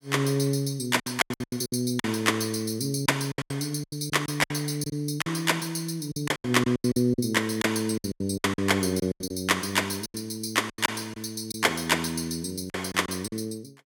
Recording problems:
lost packets; 13% of the sound replaced, filled with silence

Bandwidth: 18 kHz